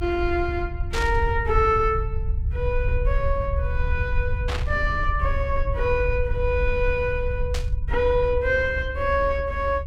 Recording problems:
low-frequency rumble; below 72 Hz, SNR 3 dB
static burst; at 1 s, at 4.5 s and at 7.5 s; peak -2 dB vs average level

